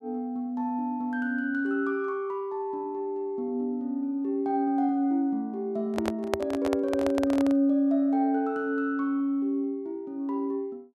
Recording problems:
microphone handling noise; from 6 to 7.5 s; peak +4 dB vs average level

